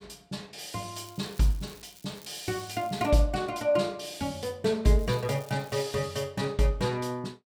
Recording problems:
crackle; from 1 to 3 s and at 5 s; loose cable, SNR 22 dB

